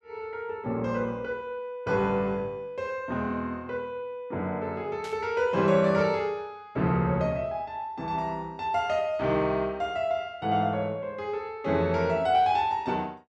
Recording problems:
burst of static; at 5 s; peak -11 dB vs average level

